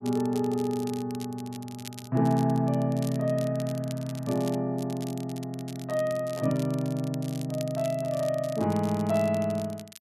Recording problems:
crackle; vinyl, SNR 18 dB

